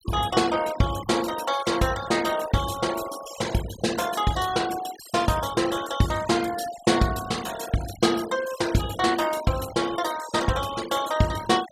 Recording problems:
denoising artefacts; signal-to-artefact ratio 13 dB

